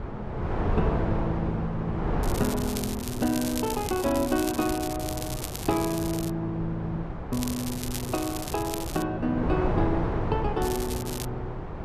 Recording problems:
wind on the microphone; below 500 Hz, SNR 2 dB
crackle; from 2 to 6.5 s, from 7.5 to 9 s and at 11 s; loose cable, SNR 7 dB

